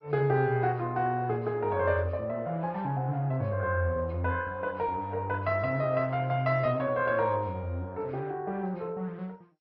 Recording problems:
codec artefacts; MP2, log-spectral distance 2 dB, nothing above 4.8 kHz

